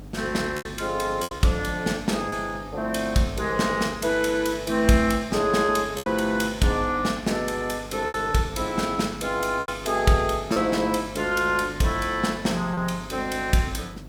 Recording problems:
hum; 50 Hz, harmonics up to 300 Hz, SNR 18 dB
background hiss; slope -6 dB per octave, SNR 24 dB
packet loss; 4% of the sound replaced, filled with repeated pitch periods

